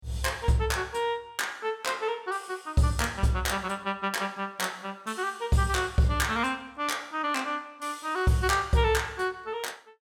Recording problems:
none

